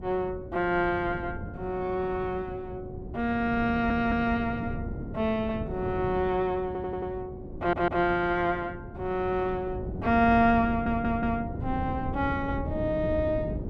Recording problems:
wind noise; below 250 Hz, SNR 9 dB
stutter; 4 times, first at 3.5 s

